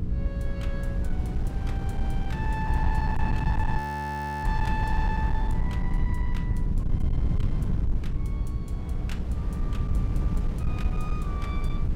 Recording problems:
distorted audio; hard clipping, signal-to-distortion ratio 11 dB
hum; 60 Hz, harmonics up to 480 Hz, SNR 0 dB
low-frequency rumble; below 98 Hz, SNR -7 dB
wind on the microphone; below 410 Hz, SNR 4 dB
audio freezing; at 4 s for 0.5 s

